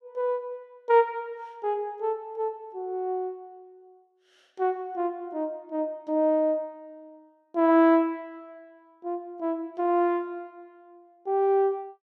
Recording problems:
none

